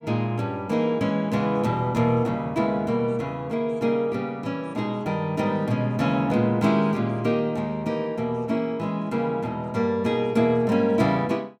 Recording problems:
none

